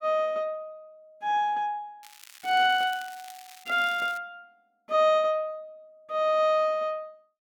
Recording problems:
crackle; from 2 to 4 s; loose cable, SNR 21 dB

